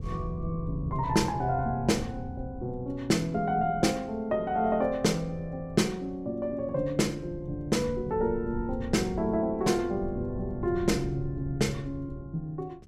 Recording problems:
wind noise; below 130 Hz, SNR 12 dB

